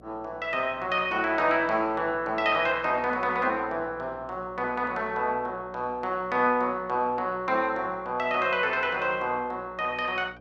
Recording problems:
electrical hum; 60 Hz, harmonics up to 720 Hz, SNR 24 dB

